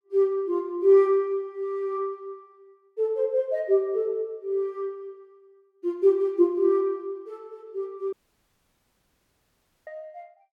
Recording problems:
audio cutting out; at 8 s for 1.5 s

